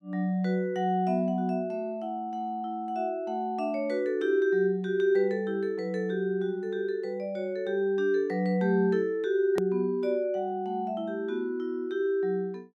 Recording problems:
edit click; at 9.5 s

